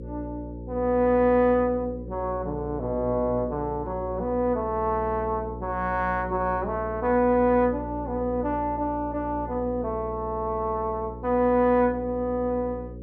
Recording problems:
mains hum; 60 Hz, harmonics up to 540 Hz, SNR 12 dB

